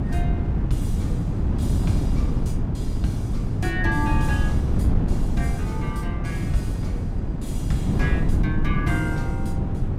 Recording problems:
wind on the microphone; below 170 Hz, SNR -6 dB

